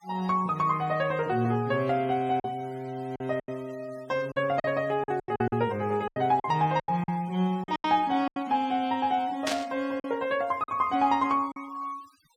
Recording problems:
noise reduction artefacts; signal-to-artefact ratio 25 dB
lost packets; 8% of the sound replaced, filled with silence
static burst; at 9.5 s; peak +2 dB vs average level

